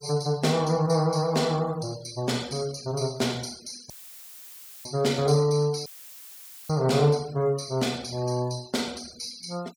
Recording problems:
denoising artefacts; signal-to-artefact ratio 22 dB
dropout; at 4 s for 1 s and at 6 s for 1 s; filled with static

